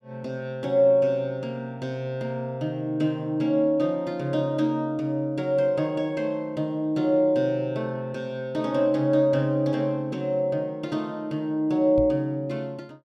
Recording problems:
knock on the microphone; at 12 s; peak -3 dB vs average level

